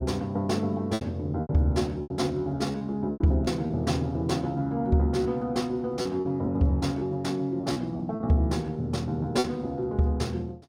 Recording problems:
lost packets; 7% of the sound replaced, filled with repeated pitch periods

